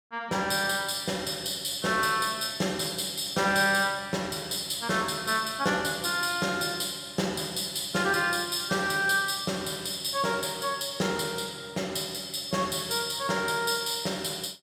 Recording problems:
none

